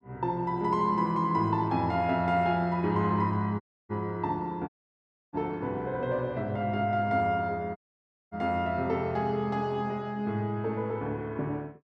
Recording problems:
dropout; at 3.5 s, at 4.5 s for 0.5 s and at 8 s for 0.5 s

